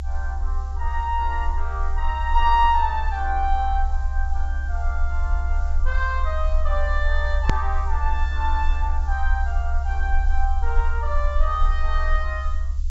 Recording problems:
treble cut off; nothing above 8 kHz
background hiss; slope +6 dB per octave, SNR 28 dB
low-frequency rumble; below 66 Hz, strongest tone 24 Hz, SNR -1 dB
edit click; at 7.5 s

